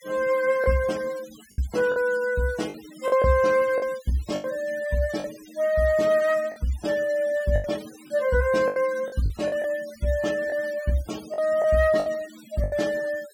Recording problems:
denoising artefacts; signal-to-artefact ratio 19 dB
packet loss; 8% of the sound replaced, filled with the last packet

